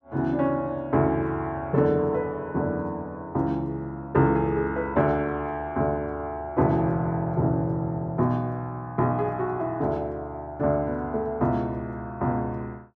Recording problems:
none

